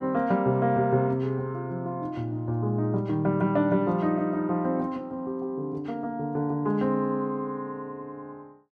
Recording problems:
none

